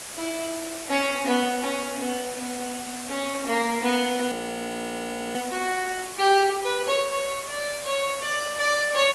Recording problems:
codec artefacts; AAC, log-spectral distance 14 dB, nothing above 11.3 kHz
hiss; slope -1 dB per octave, SNR 8 dB
frozen audio; at 4.5 s for 1 s

